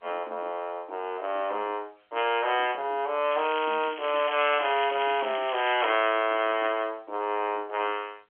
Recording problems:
telephone audio; 280 Hz to 3.3 kHz, G.711
crackle; from 3.5 to 6 s; loose cable, SNR 11 dB

